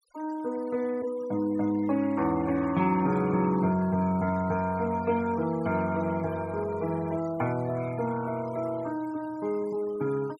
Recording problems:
noise reduction artefacts; signal-to-artefact ratio 20 dB

